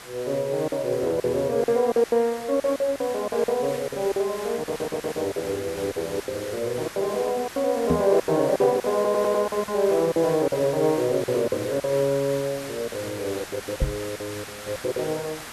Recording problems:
background hiss; SNR 13 dB
packet loss; 12% of the sound replaced, filled with silence
stutter; at 4.5 s and at 9 s
knock on the microphone; at 8 s and at 14 s; peak +4 dB vs average level

